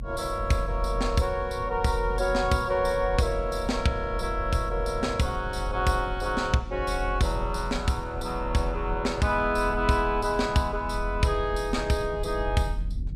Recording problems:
low-frequency rumble; below 62 Hz, strongest tone 42 Hz, SNR 8 dB

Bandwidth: 15 kHz